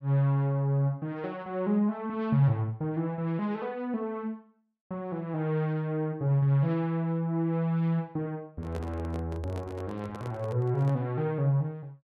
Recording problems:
handling noise; from 8.5 to 11 s; peak -7 dB vs average level

